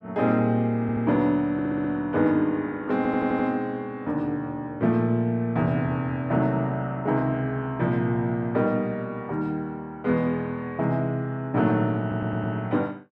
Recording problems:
stutter; 4 times, first at 1 s

